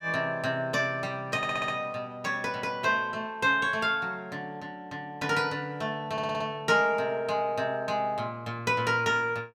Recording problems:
audio stuttering; at 1.5 s and at 6 s

